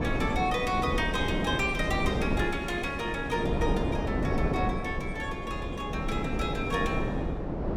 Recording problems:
wind on the microphone; below 430 Hz, SNR 0 dB

